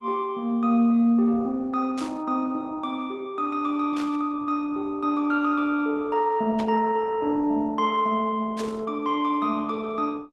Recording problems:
lossy codec; Opus, log-spectral distance 2 dB
burst of static; 4 times, first at 2 s; peak -8 dB vs average level

